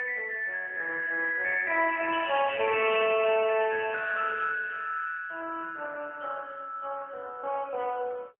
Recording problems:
telephone audio; 370 Hz to 2.2 kHz, AMR-NB, then MP3

